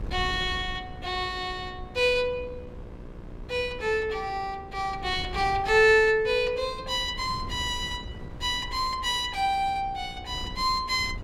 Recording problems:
hum; 60 Hz, harmonics up to 3.2 kHz, SNR 23 dB
wind noise; below 150 Hz, SNR 16 dB

